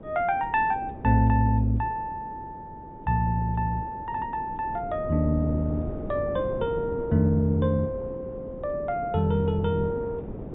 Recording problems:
treble missing; nothing above 4 kHz
wind noise; below 410 Hz, SNR 12 dB

